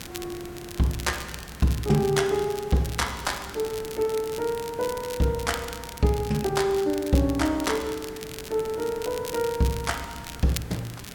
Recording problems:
hiss; slope -5 dB per octave, SNR 17 dB
crackling; vinyl, SNR 14 dB

